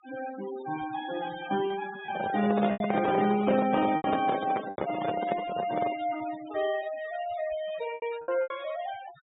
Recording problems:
treble missing; nothing above 4 kHz
denoising artefacts; signal-to-artefact ratio 14 dB
lost packets; 6% of the sound replaced, filled with repeated pitch periods
microphone handling noise; from 2 to 6 s; peak +4 dB vs average level

